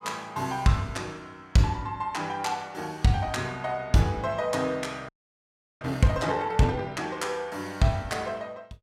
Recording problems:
audio freezing; at 5 s for 0.5 s

